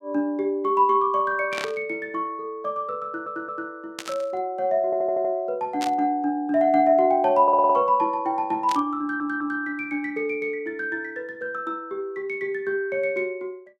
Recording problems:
burst of static; 4 times, first at 1.5 s; peak -3 dB vs average level
audio stuttering; 4 times, first at 3 s

